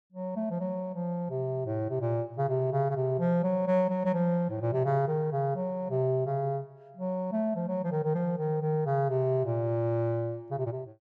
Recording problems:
none

